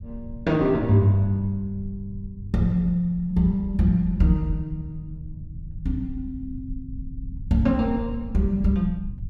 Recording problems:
rumble; below 98 Hz, SNR 15 dB

